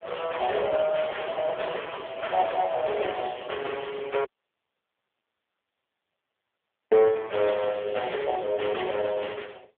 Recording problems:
telephone audio; 320 Hz to 3.4 kHz, AMR-NB
audio cutting out; at 4.5 s for 2.5 s

